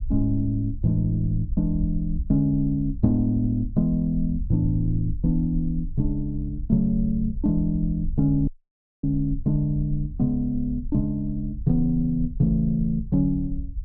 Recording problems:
low-frequency rumble; below 60 Hz, SNR 10 dB
audio cutting out; at 8.5 s for 0.5 s

